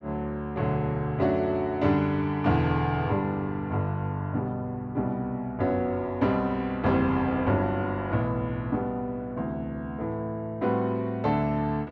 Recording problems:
none

